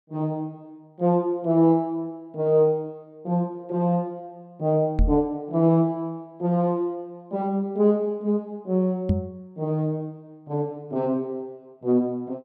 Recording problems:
microphone thump; at 5 s and at 9 s; peak +6 dB vs average level

